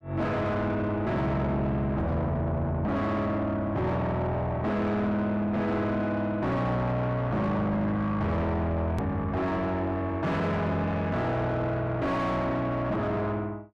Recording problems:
distorted audio; soft clipping, signal-to-distortion ratio 6 dB
edit click; at 9 s

